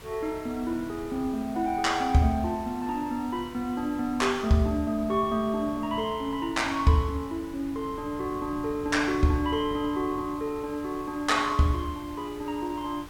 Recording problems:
background hiss; SNR 21 dB
wind on the microphone; below 220 Hz, SNR 19 dB

